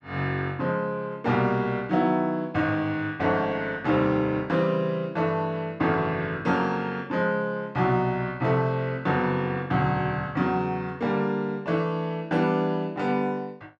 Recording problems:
none

